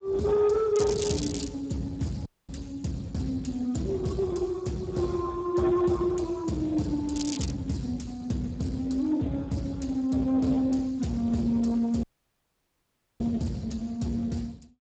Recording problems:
codec artefacts; Speex, log-spectral distance 4 dB, nothing above 7.6 kHz
distorted audio; soft clipping, signal-to-distortion ratio 11 dB
crackle; at 1 s and at 7 s; loose cable, SNR 9 dB
dropout; at 2.5 s and at 12 s for 1 s

